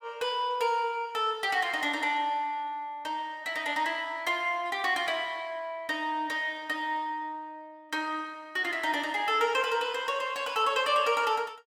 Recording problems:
none

